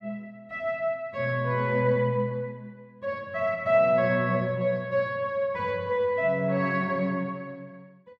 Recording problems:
none

